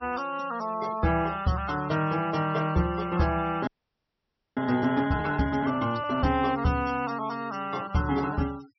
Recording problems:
treble missing; nothing above 5.8 kHz
denoising artefacts; signal-to-artefact ratio 19 dB
frozen audio; at 3.5 s for 1 s

